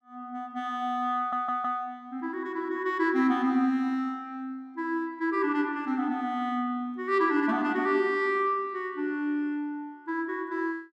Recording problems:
stutter; at 1 s

